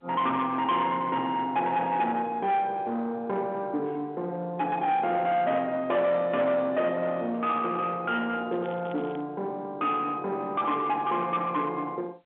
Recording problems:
telephone audio; 260 Hz to 3.6 kHz, G.711
distortion; soft clipping, signal-to-distortion ratio 11 dB
crackle; at 8.5 s; loose cable, SNR 26 dB

